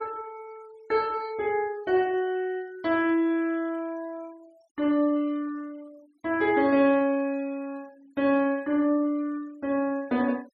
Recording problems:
noise reduction artefacts; signal-to-artefact ratio 28 dB

